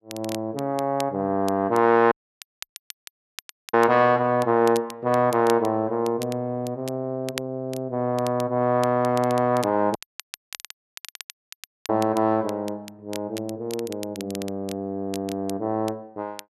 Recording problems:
crackling; vinyl, SNR 18 dB
audio cutting out; at 2 s for 1.5 s and at 10 s for 2 s

